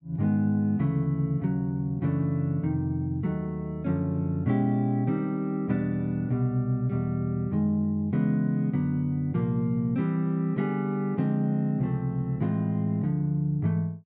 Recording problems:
none

